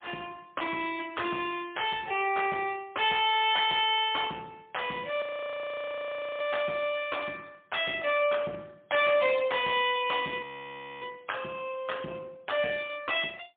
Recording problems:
telephone audio; 220 Hz to 3.5 kHz, AMR-NB, then MP3
distorted audio; soft clipping, signal-to-distortion ratio 12 dB
frozen audio; at 5 s for 1 s and at 10 s for 0.5 s

